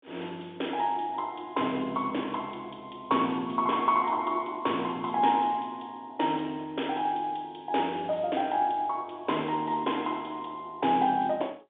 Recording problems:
telephone audio; 220 Hz to 3.6 kHz, G.711

